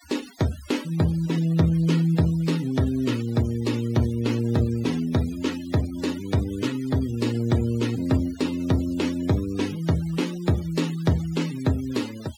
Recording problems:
denoising artefacts; signal-to-artefact ratio 17 dB

